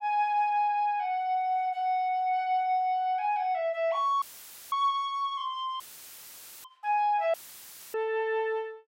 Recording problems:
audio cutting out; at 4 s for 0.5 s, at 6 s for 1 s and at 7.5 s for 0.5 s; filled with static

